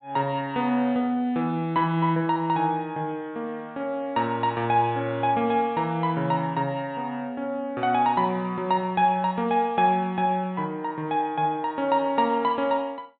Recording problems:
treble cut off; nothing above 4 kHz

